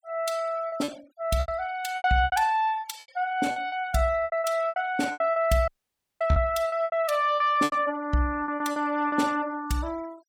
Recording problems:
denoising artefacts; signal-to-artefact ratio 23 dB
lost packets; 13% of the sound replaced, filled with repeated pitch periods
audio cutting out; at 5.5 s for 0.5 s

